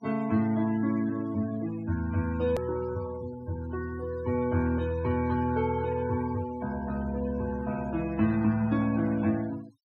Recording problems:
denoising artefacts; signal-to-artefact ratio 17 dB
edit click; at 2.5 s

